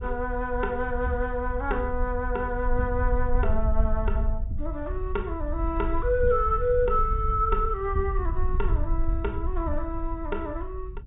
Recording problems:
treble missing; nothing above 4 kHz
wind on the microphone; below 58 Hz, SNR 3 dB

